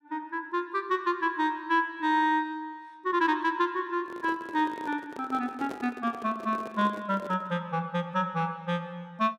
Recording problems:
microphone handling noise; from 4 to 7.5 s; peak -6 dB vs average level

